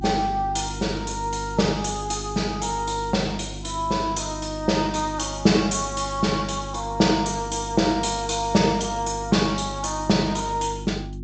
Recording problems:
treble missing; nothing above 8 kHz
electrical hum; 50 Hz, harmonics up to 350 Hz, SNR 12 dB

